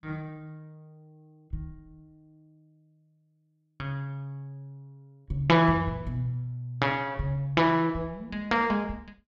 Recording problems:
none

